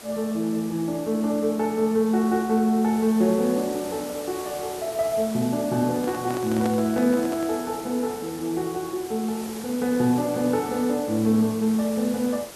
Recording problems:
hiss; slope -3 dB per octave, SNR 15 dB
microphone handling noise; from 6 to 7.5 s; peak -3 dB vs average level

